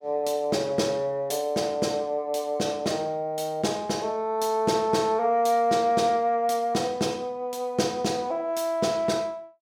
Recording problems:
none

